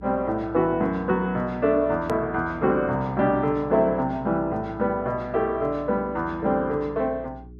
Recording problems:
hum; 60 Hz, harmonics up to 420 Hz, SNR 20 dB
click at an edit; at 2 s

